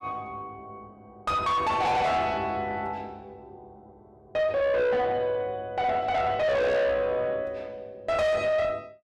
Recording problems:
distorted audio; soft clipping, signal-to-distortion ratio 5 dB

